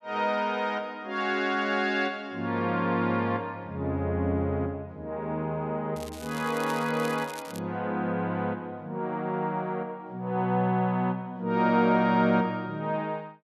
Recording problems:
crackle; from 6 to 7.5 s; loose cable, SNR 16 dB

